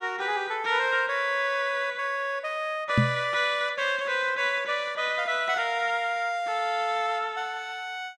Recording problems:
microphone thump; at 3 s; peak +7 dB vs average level

